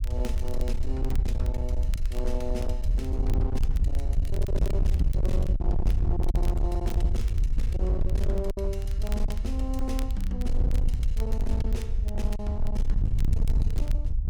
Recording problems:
distortion; hard clipping, signal-to-distortion ratio 7 dB
rumble; below 66 Hz, SNR -8 dB
crackle; vinyl, SNR 15 dB
packet loss; 2% of the sound replaced, filled with silence

